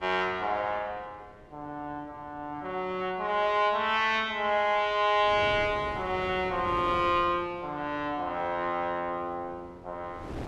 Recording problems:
wind on the microphone; below 580 Hz, SNR 18 dB

